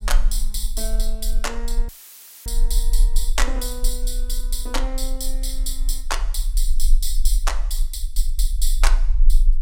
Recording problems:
rumble; below 36 Hz, strongest tone 20 Hz, SNR -4 dB
dropout; at 2 s for 0.5 s; filled with static

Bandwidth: 16 kHz